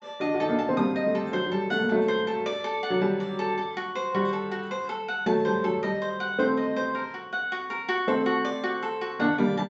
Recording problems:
treble missing; nothing above 7.7 kHz

